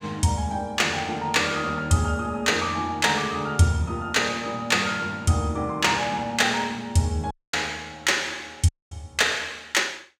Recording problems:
dropout; at 7.5 s and at 8.5 s

